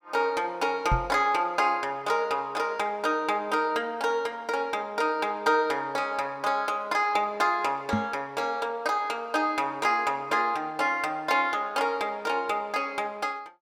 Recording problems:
microphone bump; at 1 s and at 8 s; peak +3 dB vs average level

